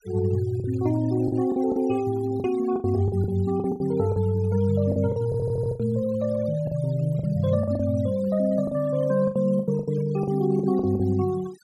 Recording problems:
denoising artefacts; signal-to-artefact ratio 21 dB
lost packets; 11% of the sound replaced, filled with the last packet
audio stuttering; at 5.5 s

